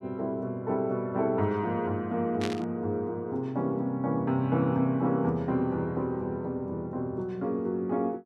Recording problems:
burst of static; at 2.5 s; peak -2 dB vs average level

